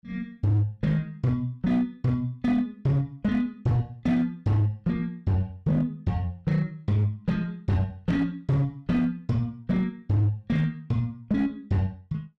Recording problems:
distortion; hard clipping, signal-to-distortion ratio 11 dB

